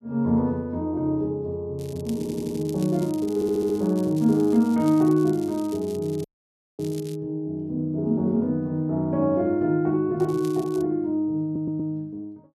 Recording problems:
crackle; from 2 to 7 s and at 10 s; loose cable, SNR 22 dB
audio stuttering; at 2 s, at 3.5 s and at 11 s
dropout; at 6 s for 0.5 s

